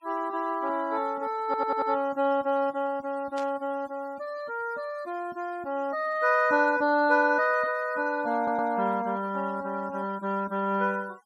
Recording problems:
denoising artefacts; signal-to-artefact ratio 26 dB
stutter; at 1.5 s and at 8.5 s
burst of static; at 3.5 s; peak -12 dB vs average level

